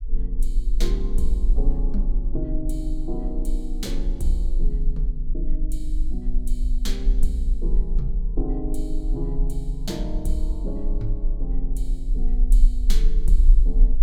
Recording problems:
rumble; below 36 Hz, strongest tone 24 Hz, SNR -6 dB

